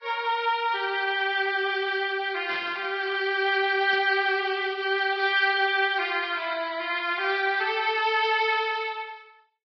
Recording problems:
lossy codec; Vorbis, log-spectral distance 3 dB
burst of static; at 2.5 s and at 4 s; peak -9 dB vs average level

